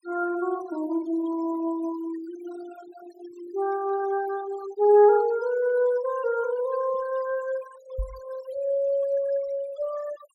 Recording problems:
denoising artefacts; signal-to-artefact ratio 19 dB
knock on the microphone; at 8 s; peak -3 dB vs average level

